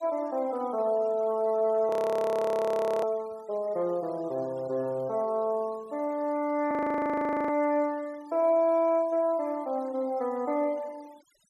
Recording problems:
noise reduction artefacts; signal-to-artefact ratio 26 dB
audio freezing; at 2 s for 1 s and at 6.5 s for 1 s

